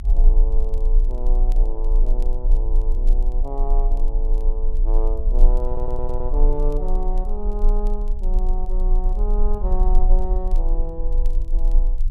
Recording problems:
rumble; below 32 Hz, strongest tone 28 Hz, SNR -10 dB
crackling; vinyl, SNR 27 dB
audio stuttering; at 5.5 s

